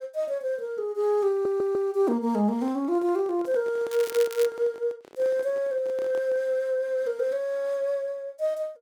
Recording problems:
stutter; at 1.5 s
handling noise; from 2.5 to 6.5 s; peak -10 dB vs average level
crackling; at 4 s; loose cable, SNR 13 dB

